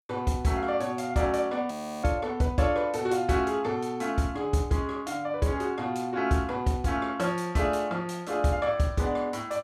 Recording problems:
frozen audio; at 1.5 s

